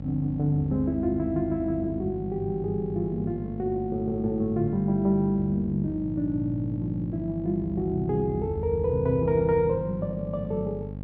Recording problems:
electrical hum; 50 Hz, harmonics up to 800 Hz, SNR 10 dB

